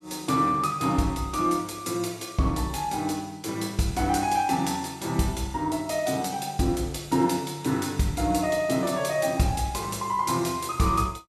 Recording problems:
none

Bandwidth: 13.5 kHz